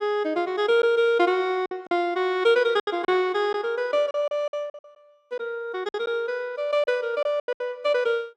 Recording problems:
packet loss; 9% of the sound replaced, filled with silence

